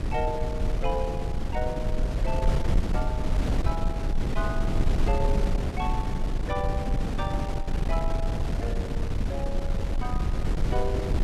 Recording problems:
wind noise; below 110 Hz, SNR -6 dB

